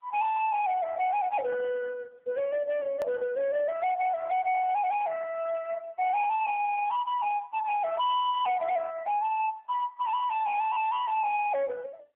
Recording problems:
phone line; 990 Hz to 3.3 kHz, AMR-NB
distorted audio; hard clipping, signal-to-distortion ratio 11 dB
hard cut with a click; at 3 s

